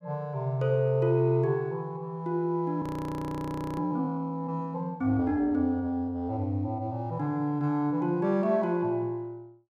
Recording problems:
audio freezing; at 3 s for 1 s

